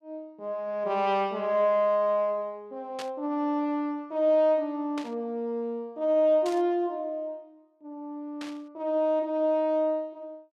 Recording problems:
burst of static; 4 times, first at 3 s; peak -8 dB vs average level

